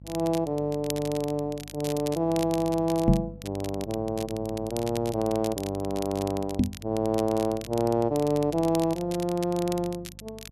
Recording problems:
hum; 50 Hz, harmonics up to 550 Hz, SNR 18 dB
crackling; vinyl, SNR 14 dB
microphone bump; at 3 s and at 6.5 s; peak +9 dB vs average level

